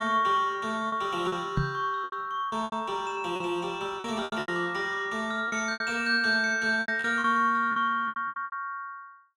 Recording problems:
packet loss; 12% of the sound replaced, filled with repeated pitch periods
microphone thump; at 1.5 s; peak +3 dB vs average level

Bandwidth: 16 kHz